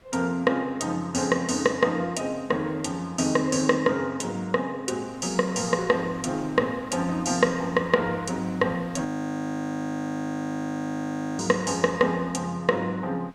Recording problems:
wind on the microphone; below 1.8 kHz, SNR 24 dB
audio freezing; at 9 s for 2.5 s

